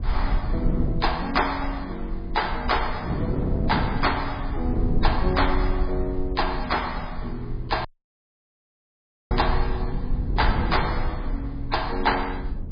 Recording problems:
codec artefacts; MP3, log-spectral distance 3 dB, nothing above 5 kHz
low-frequency rumble; below 56 Hz, SNR 4 dB
wind on the microphone; below 280 Hz, SNR 6 dB
audio cutting out; at 8 s for 1.5 s

